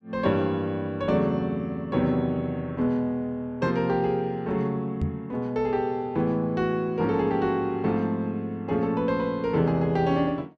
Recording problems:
knock on the microphone; at 5 s; peak +2 dB vs average level

